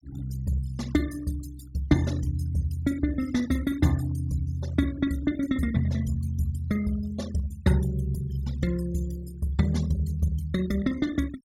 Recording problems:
noise reduction artefacts; signal-to-artefact ratio 19 dB

